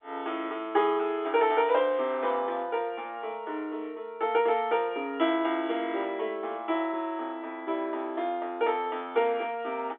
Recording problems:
phone line; 260 Hz to 3.6 kHz, G.711

